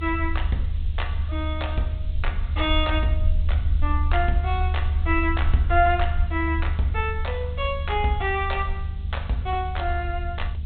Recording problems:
low-pass filter; nothing above 4 kHz
hum; 50 Hz, harmonics up to 450 Hz, SNR 15 dB
hiss; SNR 26 dB
low-frequency rumble; below 76 Hz, SNR 0 dB

